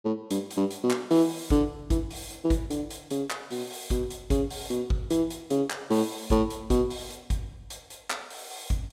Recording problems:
none

